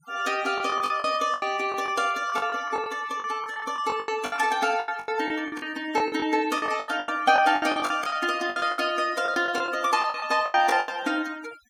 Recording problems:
noise reduction artefacts; signal-to-artefact ratio 18 dB
lost packets; 17% of the sound replaced, filled with the last packet

